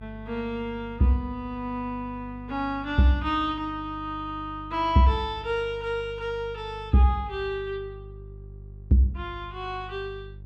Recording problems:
mains hum; 50 Hz, harmonics up to 400 Hz, SNR 16 dB

